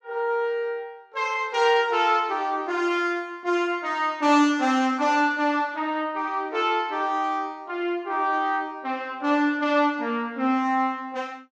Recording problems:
none

